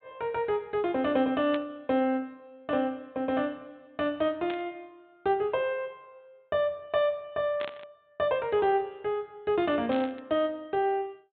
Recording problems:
treble missing; nothing above 4 kHz
burst of static; 4 times, first at 1.5 s; peak -6 dB vs average level

